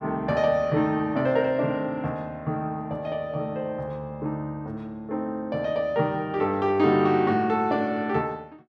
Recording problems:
none

